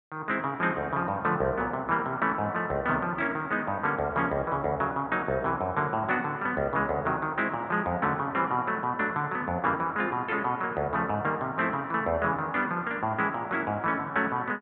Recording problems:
low-pass filter; nothing above 4 kHz

